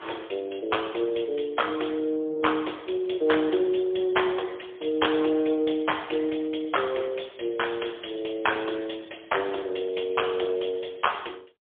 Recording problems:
telephone audio; 320 Hz to 3.4 kHz, AMR-NB, then MP3

